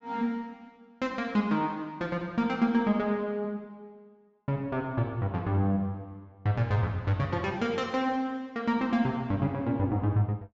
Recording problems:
low-pass filter; nothing above 8 kHz

